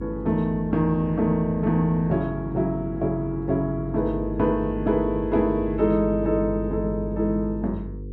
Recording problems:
electrical hum; 50 Hz, harmonics up to 500 Hz, SNR 10 dB

